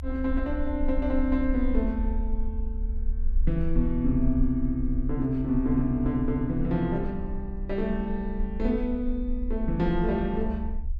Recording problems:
rumble; below 54 Hz, strongest tone 20 Hz, SNR 5 dB

